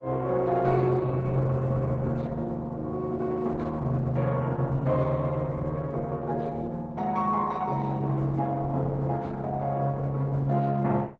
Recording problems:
lossy compression; Opus, log-spectral distance 2 dB, nothing above 7.6 kHz

